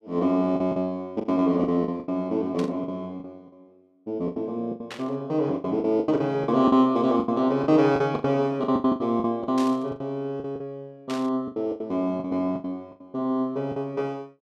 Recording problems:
packet loss; 15% of the sound replaced, filled with the last packet
static burst; 4 times, first at 2.5 s; peak -8 dB vs average level

